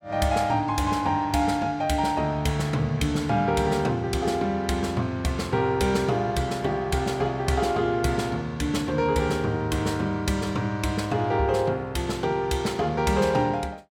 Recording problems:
none

